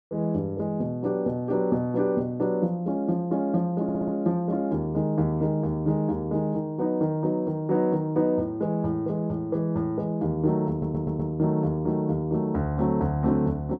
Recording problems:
stutter; at 4 s and at 11 s

